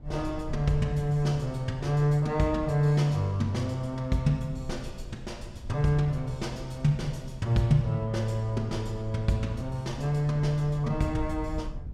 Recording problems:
rumble; below 76 Hz, SNR 15 dB

